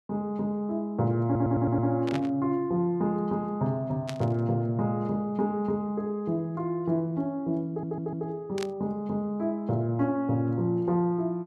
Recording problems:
audio stuttering; at 1.5 s and at 7.5 s
static burst; at 2 s, at 4 s and at 8.5 s; peak -4 dB vs average level

